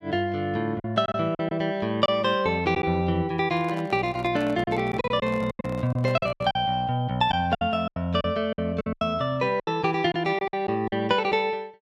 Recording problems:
lost packets; 10% of the sound replaced, filled with silence
handling noise; from 3.5 to 6.5 s; peak -8 dB vs average level

